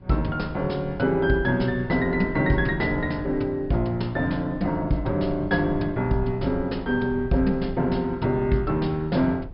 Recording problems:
low-pass filter; nothing above 5.5 kHz
rumble; below 110 Hz, SNR 15 dB

